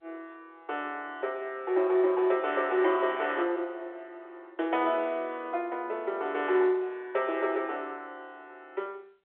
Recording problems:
telephone audio; 300 Hz to 3.6 kHz, G.711

